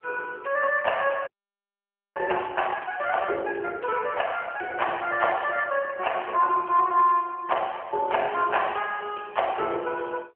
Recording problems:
phone line; 320 Hz to 3.2 kHz, AMR-NB
frozen audio; at 1.5 s for 1 s

